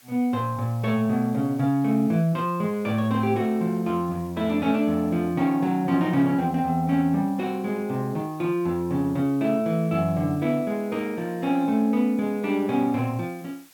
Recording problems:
background hiss; slope +1 dB per octave, SNR 27 dB

